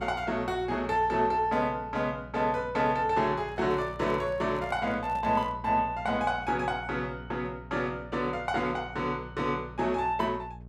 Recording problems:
electrical hum; 60 Hz, harmonics up to 660 Hz, SNR 16 dB
handling noise; from 3.5 to 5.5 s; peak -11 dB vs average level

